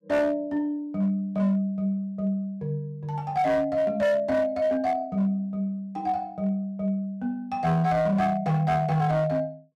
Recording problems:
distortion; hard clipping, signal-to-distortion ratio 12 dB

